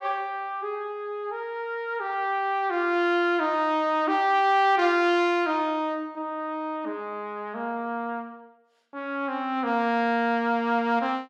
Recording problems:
none

